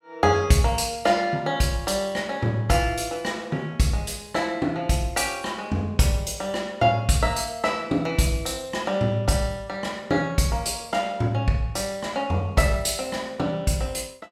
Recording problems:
none

